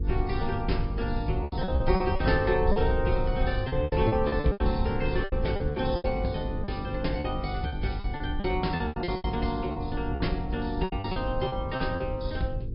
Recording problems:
low-pass filter; nothing above 5.2 kHz
lossy codec; AAC, log-spectral distance 2 dB
hum; 50 Hz, harmonics up to 500 Hz, SNR 7 dB
rumble; below 86 Hz, SNR 5 dB
lost packets; 13% of the sound replaced, filled with repeated pitch periods

